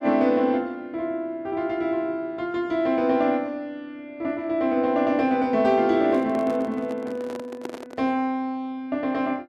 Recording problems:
microphone handling noise; from 6 to 8 s; peak -6 dB vs average level

